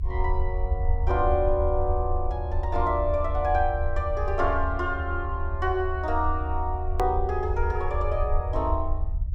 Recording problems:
low-frequency rumble; below 78 Hz, strongest tone 20 Hz, SNR 2 dB
hard cut with a click; at 7 s

